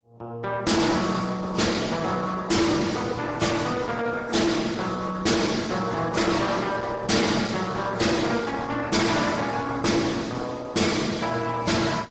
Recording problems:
codec artefacts; AAC, then Opus, log-spectral distance 5 dB, nothing above 7.6 kHz
distorted audio; soft clipping, signal-to-distortion ratio 7 dB

